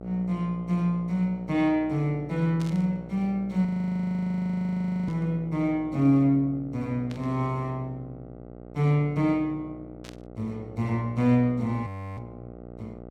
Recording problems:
electrical hum; 60 Hz, harmonics up to 1.3 kHz, SNR 17 dB
static burst; 5 times, first at 2.5 s; peak -13 dB vs average level
frozen audio; at 3.5 s for 1.5 s and at 12 s

